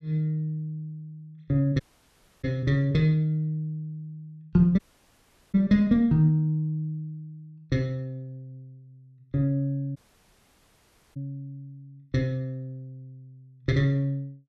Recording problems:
dropout; at 2 s for 0.5 s, at 5 s for 1 s and at 10 s for 1 s

